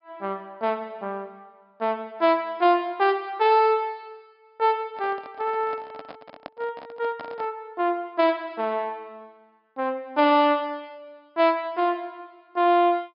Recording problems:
low-pass filter; nothing above 5.5 kHz
handling noise; from 5 to 7.5 s; peak -9 dB vs average level

